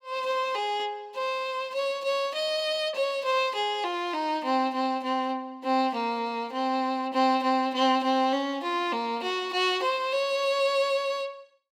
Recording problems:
none

